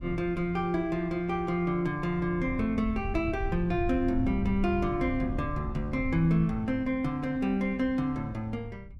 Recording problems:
wind on the microphone; below 100 Hz, SNR 10 dB

